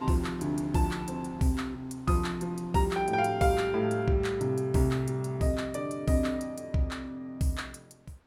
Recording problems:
wind noise; below 1.4 kHz, SNR 25 dB

